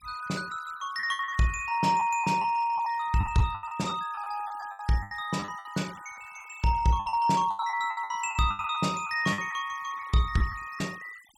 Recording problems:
denoising artefacts; signal-to-artefact ratio 21 dB
packet loss; 13% of the sound replaced, filled with the last packet

